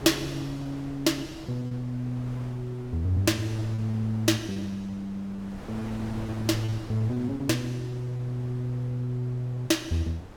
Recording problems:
wind noise; below 780 Hz, SNR 14 dB
lost packets; 7% of the sound replaced, filled with repeated pitch periods

